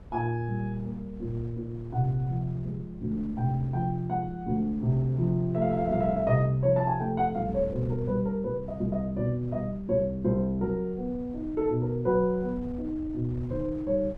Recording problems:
wind noise; below 150 Hz, SNR 16 dB

